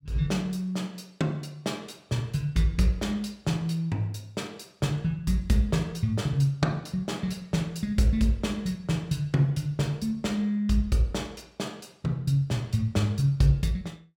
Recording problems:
none

